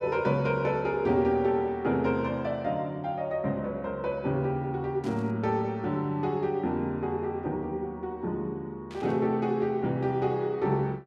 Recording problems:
static burst; at 5 s and at 9 s; peak -15 dB vs average level

